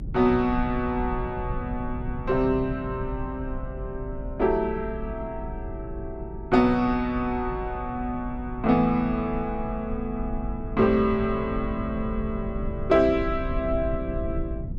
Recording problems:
rumble; below 120 Hz, SNR 9 dB

